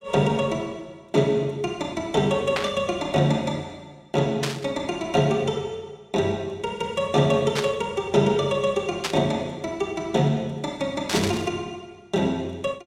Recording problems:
static burst; 5 times, first at 2.5 s; peak +3 dB vs average level

